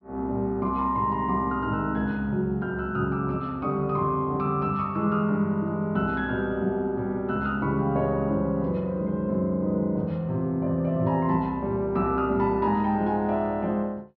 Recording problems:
treble missing; nothing above 5.6 kHz

